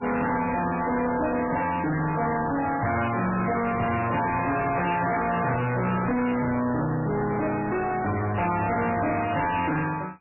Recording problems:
codec artefacts; MP3, log-spectral distance 6 dB, nothing above 2.8 kHz
distortion; soft clipping, signal-to-distortion ratio 5 dB
microphone handling noise; from 4 to 7 s; peak -5 dB vs average level

